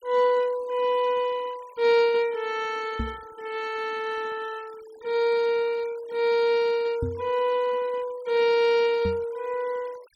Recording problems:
denoising artefacts; signal-to-artefact ratio 23 dB
microphone bump; at 3 s, at 7 s and at 9 s; peak -1 dB vs average level

